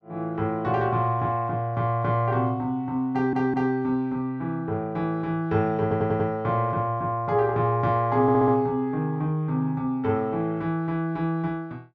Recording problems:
audio stuttering; at 3 s, at 6 s and at 8 s

